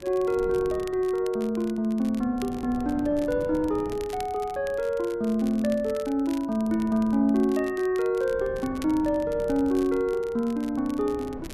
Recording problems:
wind on the microphone; below 420 Hz, SNR 17 dB
crackling; vinyl, SNR 23 dB

